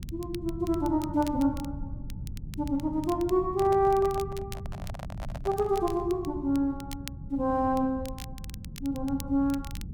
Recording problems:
rumble; below 150 Hz, SNR 12 dB
crackling; vinyl, SNR 20 dB
handling noise; from 3.5 to 6 s; peak -7 dB vs average level

